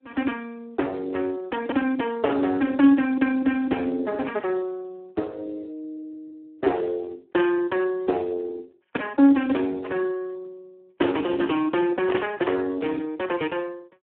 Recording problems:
telephone audio; 240 Hz to 3.1 kHz, Speex
burst of static; at 12 s; peak -4 dB vs average level

